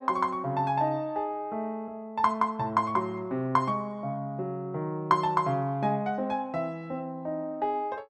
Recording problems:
none

